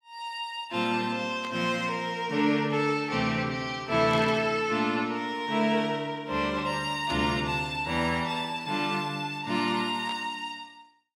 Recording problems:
burst of static; 4 times, first at 1.5 s; peak -8 dB vs average level

